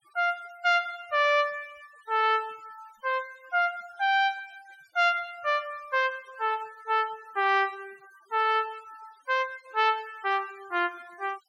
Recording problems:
noise reduction artefacts; signal-to-artefact ratio 25 dB

